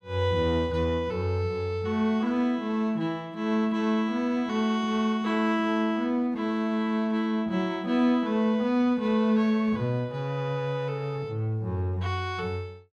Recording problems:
none

